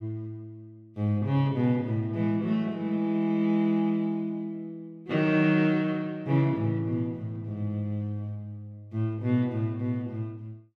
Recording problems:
none

